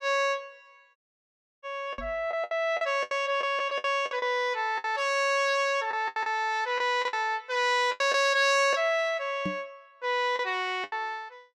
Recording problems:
packet loss; 9% of the sound replaced, filled with the last packet
dropout; at 1 s for 0.5 s
microphone bump; at 2 s and at 9.5 s; peak -2 dB vs average level

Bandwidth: 14.5 kHz